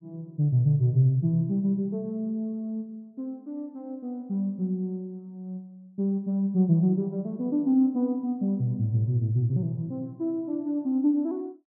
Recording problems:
none

